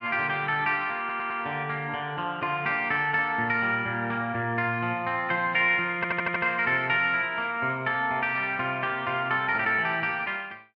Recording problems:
audio stuttering; at 1 s and at 6 s

